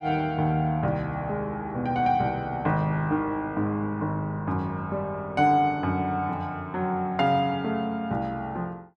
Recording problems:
none

